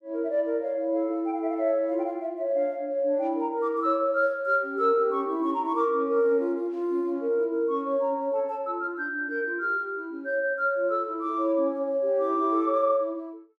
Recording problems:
none

